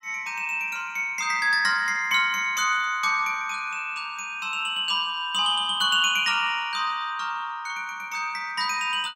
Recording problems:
none

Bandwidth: 16 kHz